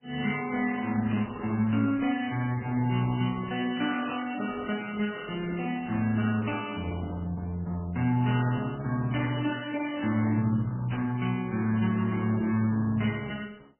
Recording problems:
codec artefacts; Opus, then MP3, log-spectral distance 4 dB, nothing above 3 kHz
burst of static; at 1 s, at 4 s and at 11 s; peak -11 dB vs average level

